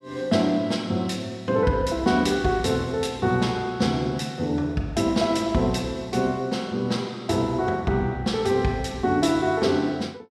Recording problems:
none

